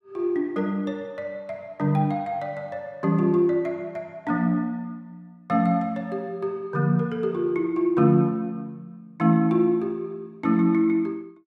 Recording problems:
none

